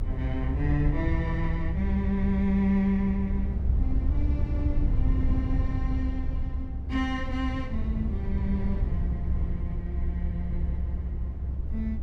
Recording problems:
rumble; below 84 Hz, SNR -1 dB

